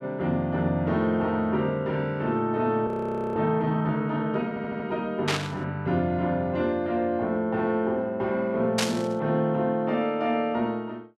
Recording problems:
frozen audio; at 3 s
audio stuttering; at 4.5 s
static burst; at 5.5 s and at 9 s; peak +4 dB vs average level

